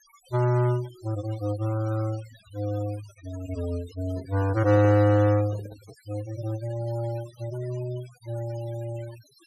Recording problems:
denoising artefacts; signal-to-artefact ratio 20 dB
handling noise; from 4 to 6 s; peak -8 dB vs average level

